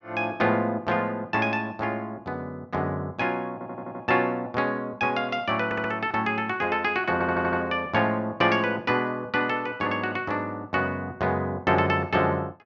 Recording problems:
stutter; at 3.5 s, at 5.5 s and at 7 s

